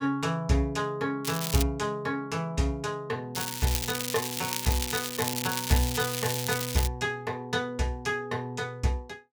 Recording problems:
crackling; at 1.5 s and from 3.5 to 7 s; loose cable, SNR 2 dB

